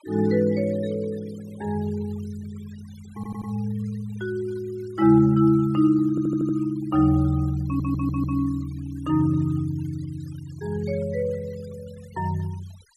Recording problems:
denoising artefacts; signal-to-artefact ratio 25 dB
audio stuttering; at 3 s, at 6 s and at 7.5 s

